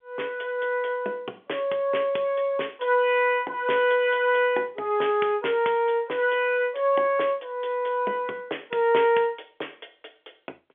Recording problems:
phone line; 300 Hz to 3.4 kHz, G.711

